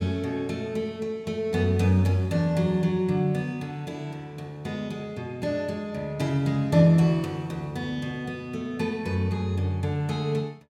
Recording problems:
none

